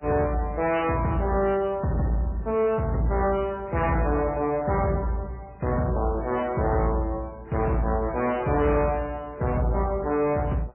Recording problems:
codec artefacts; MP3, then AAC, log-spectral distance 5 dB, nothing above 2.5 kHz
distorted audio; soft clipping, signal-to-distortion ratio 10 dB

